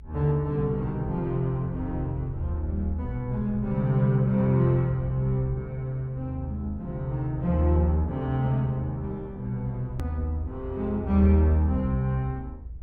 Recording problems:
low-frequency rumble; below 78 Hz, strongest tone 56 Hz, SNR 14 dB
click at an edit; at 10 s

